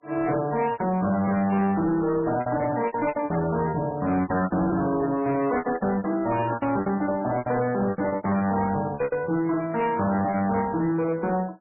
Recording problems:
lossy codec; MP3, log-spectral distance 3 dB, nothing above 2.4 kHz
distorted audio; hard clipping, uneven, signal-to-distortion ratio 10 dB
packet loss; 15% of the sound replaced, filled with repeated pitch periods
microphone handling noise; from 3 to 4.5 s; peak -9 dB vs average level

